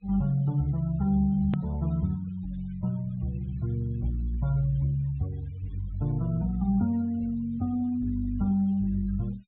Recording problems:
treble cut off; nothing above 4 kHz
noise reduction artefacts; signal-to-artefact ratio 24 dB
click at an edit; at 1.5 s

